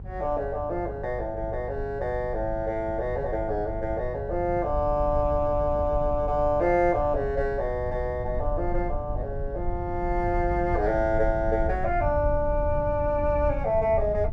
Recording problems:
electrical hum; 50 Hz, harmonics up to 550 Hz, SNR 15 dB
low-frequency rumble; below 82 Hz, SNR 8 dB

